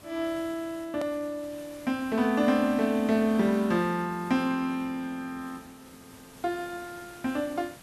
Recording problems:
background hiss; slope -3 dB per octave, SNR 21 dB
click at an edit; at 1 s

